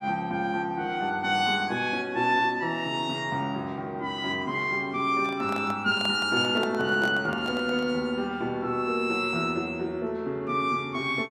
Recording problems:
microphone handling noise; from 5 to 8 s; peak -3 dB vs average level

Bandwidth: 15 kHz